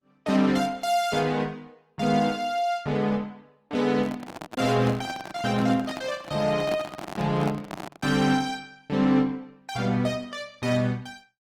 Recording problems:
lossy compression; Opus, log-spectral distance 3 dB, nothing above 18.5 kHz
handling noise; from 4 to 8 s; peak -4 dB vs average level

